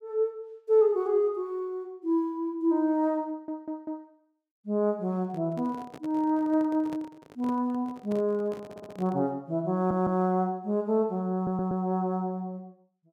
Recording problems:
stutter; 4 times, first at 3.5 s
microphone handling noise; from 5 to 9.5 s; peak -10 dB vs average level

